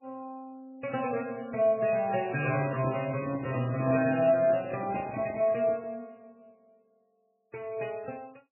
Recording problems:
lossy compression; MP3, log-spectral distance 4 dB, nothing above 2.5 kHz
handling noise; from 2.5 to 6 s; peak -6 dB vs average level

